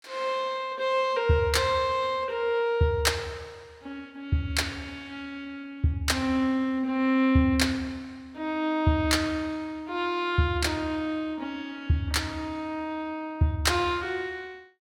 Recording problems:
none

